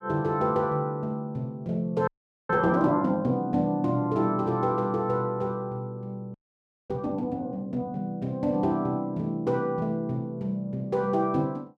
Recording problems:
frozen audio; at 2 s and at 6.5 s for 0.5 s

